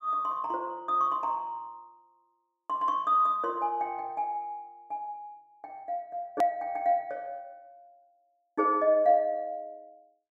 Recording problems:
click at an edit; at 6.5 s

